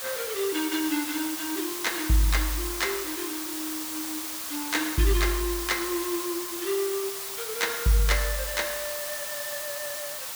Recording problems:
background hiss; SNR 3 dB

